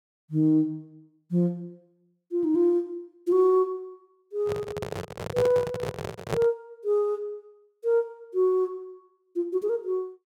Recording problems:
microphone handling noise; from 4.5 to 6.5 s; peak +2 dB vs average level

